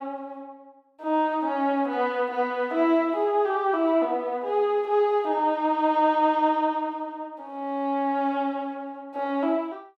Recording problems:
none

